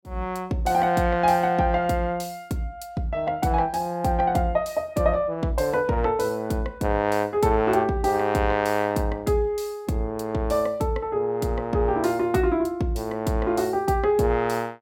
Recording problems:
none

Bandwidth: 17.5 kHz